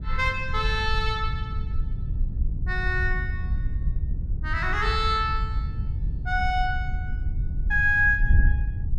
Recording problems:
wind noise; below 78 Hz, SNR 3 dB

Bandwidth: 12.5 kHz